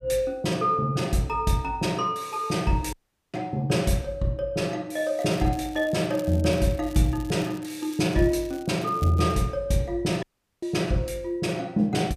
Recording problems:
dropout; at 3 s and at 10 s
crackling; from 5 to 9.5 s; loose cable, SNR 22 dB

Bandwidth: 15 kHz